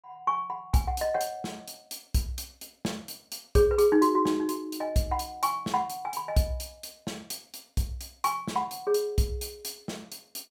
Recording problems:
none

